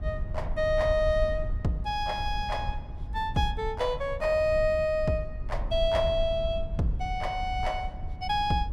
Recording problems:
rumble; below 74 Hz, SNR 8 dB

